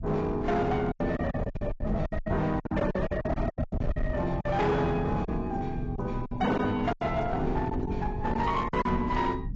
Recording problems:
codec artefacts; AAC, log-spectral distance 2 dB, nothing above 7.3 kHz
distorted audio; hard clipping, uneven, signal-to-distortion ratio 11 dB
rumble; below 120 Hz, SNR 7 dB
packet loss; 13% of the sound replaced, filled with silence

